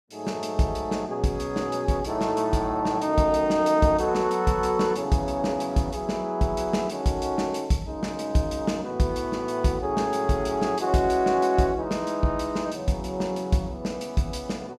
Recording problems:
none

